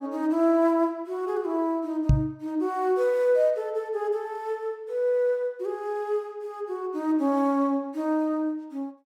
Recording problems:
microphone bump; at 2 s; peak +9 dB vs average level

